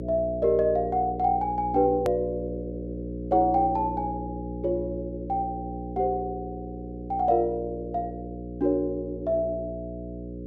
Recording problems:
electrical hum; 60 Hz, harmonics up to 540 Hz, SNR 9 dB
hard cut with a click; at 2 s

